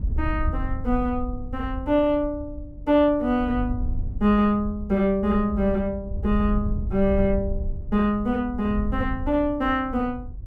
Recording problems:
wind noise; below 80 Hz, SNR 8 dB

